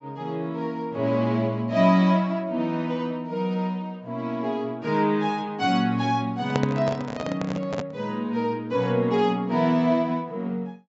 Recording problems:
low-pass filter; nothing above 8 kHz
handling noise; from 6.5 to 8 s; peak +3 dB vs average level

